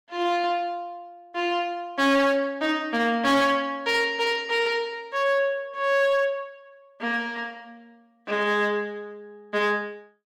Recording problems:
distorted audio; hard clipping, signal-to-distortion ratio 12 dB

